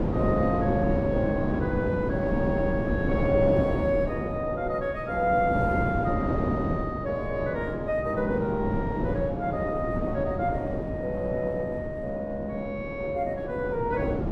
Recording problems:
wind on the microphone; below 390 Hz, SNR 1 dB

